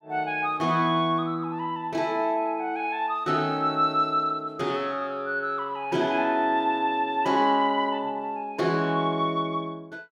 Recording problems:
none

